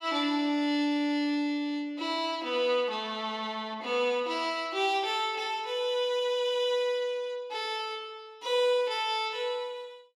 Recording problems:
none

